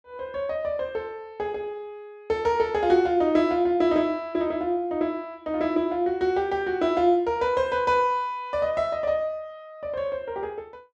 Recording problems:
none

